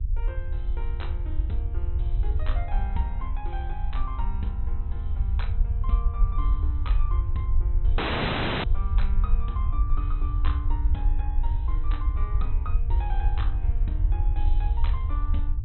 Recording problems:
low-pass filter; nothing above 4 kHz
hum; 60 Hz, harmonics up to 420 Hz, SNR 22 dB
rumble; below 62 Hz, SNR -12 dB
dropout; at 8 s for 0.5 s

